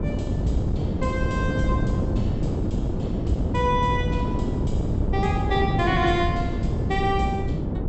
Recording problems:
treble cut off; nothing above 7.9 kHz
wind on the microphone; below 260 Hz, SNR -1 dB

